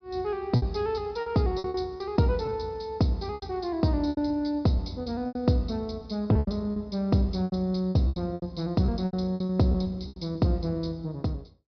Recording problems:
treble missing; nothing above 5.5 kHz
packet loss; 12% of the sound replaced, filled with repeated pitch periods

